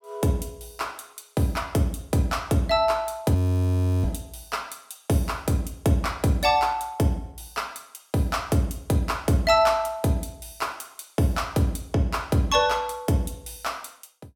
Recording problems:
frozen audio; at 3.5 s for 0.5 s

